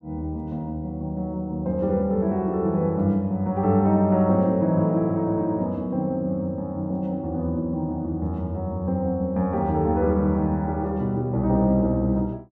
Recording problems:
none

